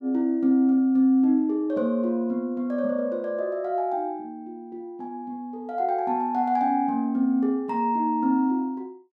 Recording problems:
none

